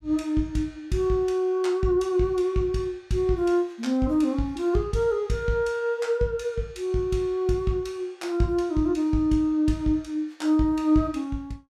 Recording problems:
none

